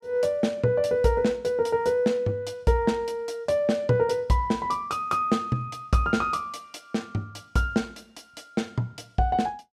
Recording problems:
none

